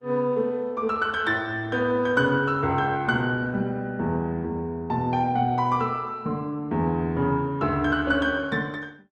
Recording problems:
lossy codec; Opus, log-spectral distance 2 dB, nothing above 11.6 kHz

